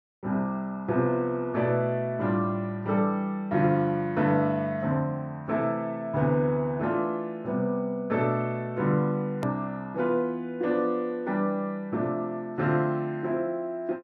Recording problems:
hard cut with a click; at 9.5 s

